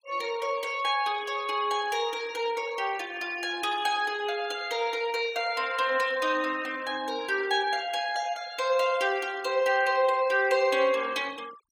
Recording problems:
denoising artefacts; signal-to-artefact ratio 21 dB

